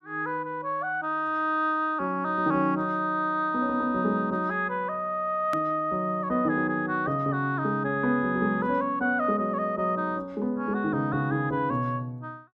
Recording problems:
click at an edit; at 5.5 s

